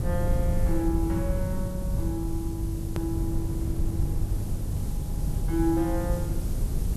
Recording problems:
hum; 50 Hz, harmonics up to 400 Hz, SNR 4 dB
background hiss; slope +2 dB per octave, SNR 15 dB
rumble; below 110 Hz, SNR -1 dB
hard cut with a click; at 3 s

